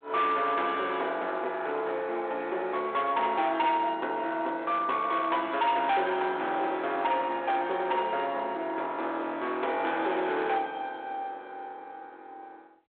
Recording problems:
telephone audio; 300 Hz to 4 kHz, G.726
distortion; hard clipping, signal-to-distortion ratio 12 dB

